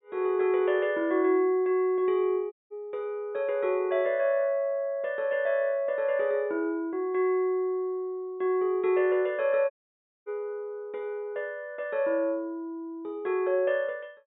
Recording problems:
treble missing; nothing above 4 kHz
dropout; at 2.5 s and at 9.5 s for 0.5 s

